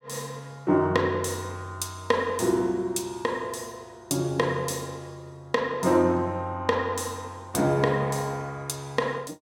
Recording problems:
none

